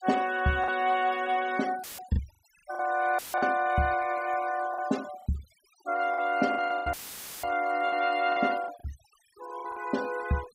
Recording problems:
noise reduction artefacts; signal-to-artefact ratio 17 dB
packet loss; 8% of the sound replaced, filled with the last packet
audio cutting out; at 2 s, at 3 s and at 7 s for 0.5 s; filled with static

